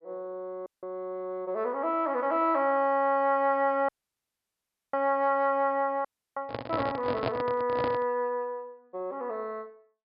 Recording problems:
treble missing; nothing above 5.1 kHz
audio cutting out; at 0.5 s, at 4 s for 1 s and at 6 s
handling noise; from 6.5 to 8 s; peak +2 dB vs average level

